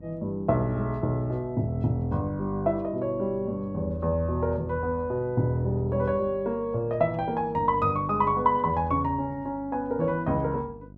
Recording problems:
hum; 50 Hz, harmonics up to 700 Hz, SNR 20 dB

